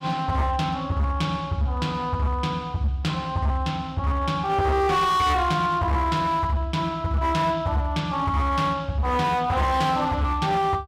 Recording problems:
distortion; hard clipping, uneven, signal-to-distortion ratio 11 dB

